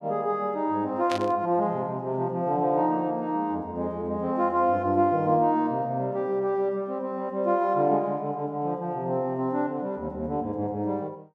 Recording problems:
static burst; at 1 s; peak -3 dB vs average level

